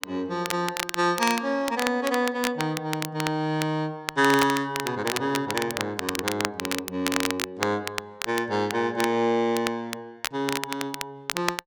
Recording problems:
crackle; vinyl, SNR 5 dB

